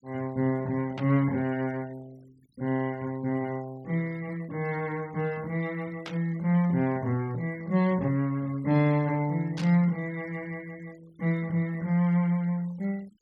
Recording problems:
noise reduction artefacts; signal-to-artefact ratio 26 dB
static burst; at 1 s, at 6 s and at 9.5 s; peak -6 dB vs average level

